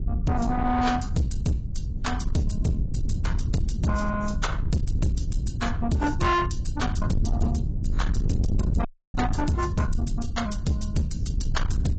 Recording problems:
lossy compression; AAC, log-spectral distance 2 dB, nothing above 7.8 kHz
distortion; soft clipping, signal-to-distortion ratio 8 dB
low-frequency rumble; below 120 Hz, SNR 2 dB
dropout; at 9 s

